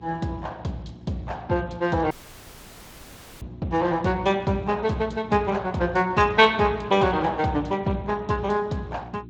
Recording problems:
lossy codec; Speex, log-spectral distance 3 dB
hum; 60 Hz, harmonics up to 360 Hz, SNR 19 dB
audio cutting out; at 2 s for 1.5 s

